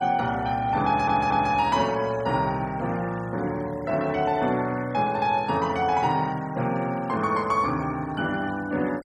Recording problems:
noise reduction artefacts; signal-to-artefact ratio 22 dB
audio stuttering; at 1 s

